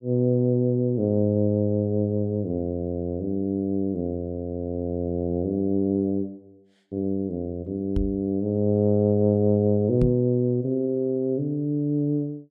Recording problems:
knock on the microphone; at 8 s and at 10 s; peak +3 dB vs average level

